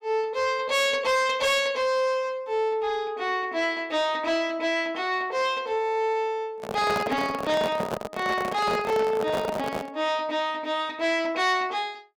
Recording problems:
distorted audio; soft clipping, signal-to-distortion ratio 11 dB
handling noise; from 6.5 to 10 s; peak 0 dB vs average level

